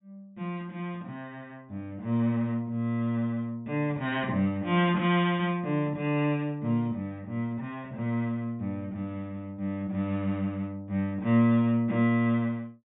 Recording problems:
treble missing; nothing above 4 kHz

